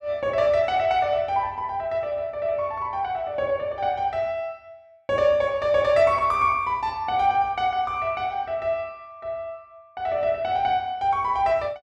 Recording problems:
none

